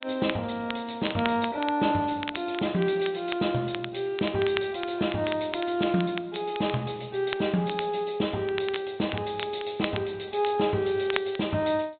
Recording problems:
treble cut off; nothing above 4 kHz
lossy codec; MP3, log-spectral distance 3 dB
crackle; vinyl, SNR 11 dB

